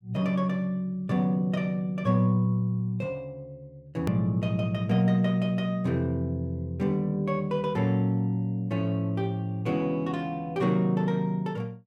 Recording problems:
click at an edit; at 4 s

